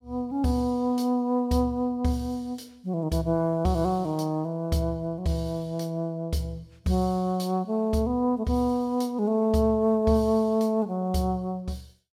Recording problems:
none

